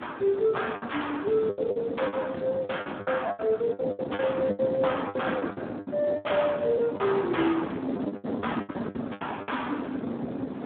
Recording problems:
phone line; 240 Hz to 3.6 kHz, Speex
wind on the microphone; below 550 Hz, SNR 7 dB
lost packets; 15% of the sound replaced, filled with the last packet

